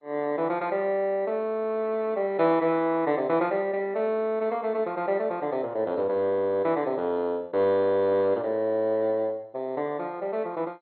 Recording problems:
codec artefacts; MP2, log-spectral distance 2 dB, nothing above 4.2 kHz

